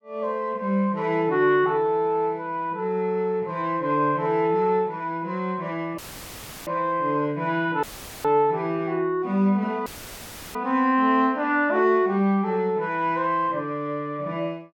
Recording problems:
audio cutting out; at 6 s for 0.5 s, at 8 s and at 10 s for 0.5 s; filled with static

